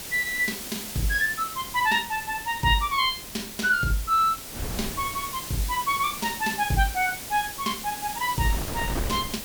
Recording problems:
background hiss; SNR 9 dB
wind noise; below 450 Hz, SNR 13 dB

